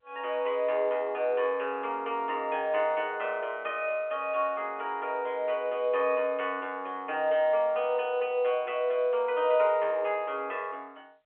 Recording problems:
telephone audio; 340 Hz to 3.3 kHz, G.711

